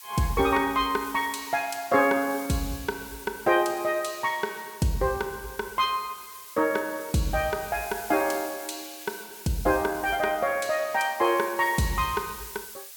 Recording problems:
hiss; SNR 14 dB

